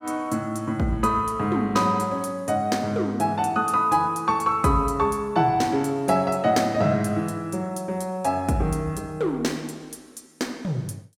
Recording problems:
none

